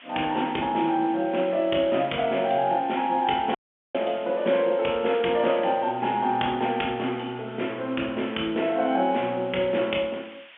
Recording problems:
telephone audio; 190 Hz to 3.4 kHz, G.711
background hiss; SNR 22 dB
audio cutting out; at 3.5 s

